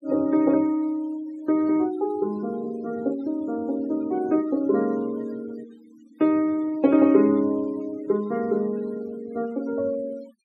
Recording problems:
noise reduction artefacts; signal-to-artefact ratio 23 dB

